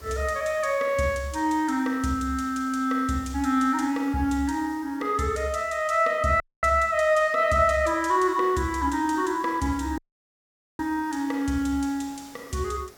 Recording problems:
hiss; SNR 25 dB
audio cutting out; at 6.5 s and at 10 s for 1 s

